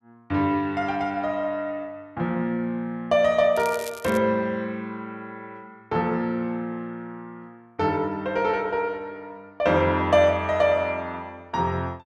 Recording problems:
crackle; at 3.5 s; loose cable, SNR 16 dB

